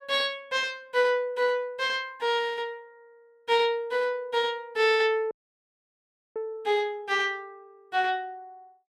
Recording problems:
audio cutting out; at 5.5 s for 1 s

